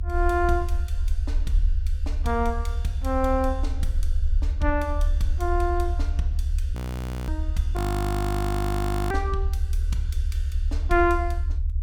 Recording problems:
low-frequency rumble; below 74 Hz, strongest tone 34 Hz, SNR 0 dB
frozen audio; at 7 s for 0.5 s and at 8 s for 1.5 s

